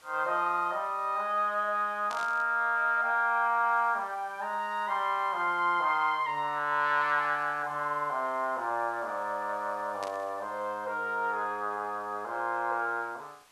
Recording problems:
background hiss; slope -1 dB per octave, SNR 28 dB
static burst; at 2 s and at 10 s; peak -9 dB vs average level

